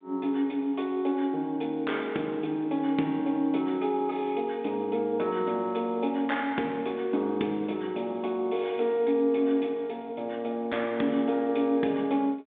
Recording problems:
telephone audio; 190 Hz to 3.6 kHz, G.726

